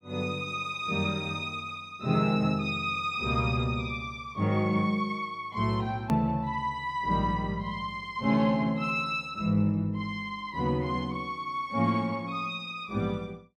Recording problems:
hard cut with a click; at 6 s

